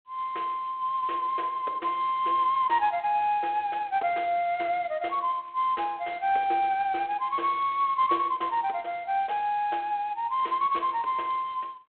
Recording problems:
phone line; 280 Hz to 3.7 kHz, G.726

